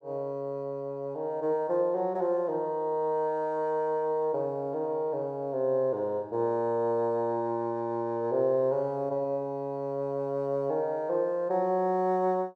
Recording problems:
none

